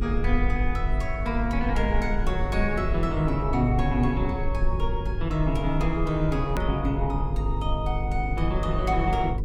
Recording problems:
hum; 50 Hz, harmonics up to 500 Hz, SNR 3 dB
low-frequency rumble; below 50 Hz, strongest tone 24 Hz, SNR 5 dB
edit click; at 6.5 s

